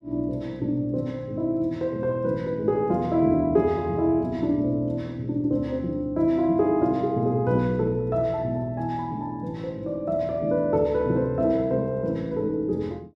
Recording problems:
none

